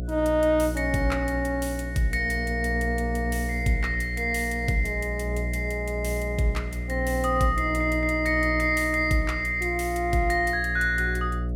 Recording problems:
hum; 60 Hz, harmonics up to 660 Hz, SNR 6 dB

